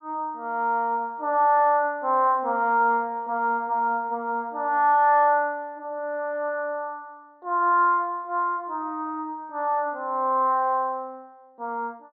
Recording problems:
treble cut off; nothing above 4.7 kHz

